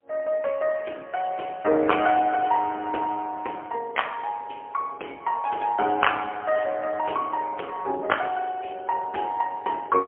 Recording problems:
phone line; 300 Hz to 3.3 kHz, AMR-NB, then MP3

